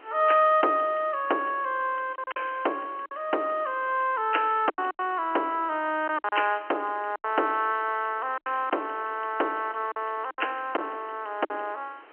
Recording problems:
phone line; 280 Hz to 3.3 kHz, G.711
hiss; SNR 24 dB
lost packets; 6% of the sound replaced, filled with silence

